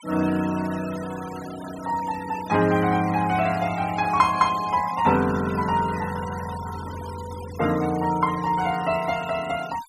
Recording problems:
noise reduction artefacts; signal-to-artefact ratio 15 dB

